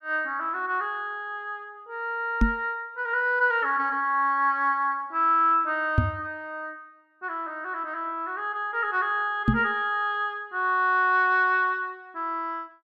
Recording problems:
knock on the microphone; at 2.5 s, at 6 s and at 9.5 s; peak +7 dB vs average level

